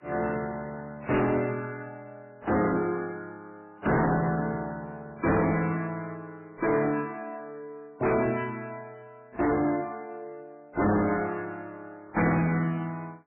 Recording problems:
lossy codec; MP3, then AAC, log-spectral distance 3 dB, nothing above 2.7 kHz
distorted audio; hard clipping, uneven, signal-to-distortion ratio 7 dB

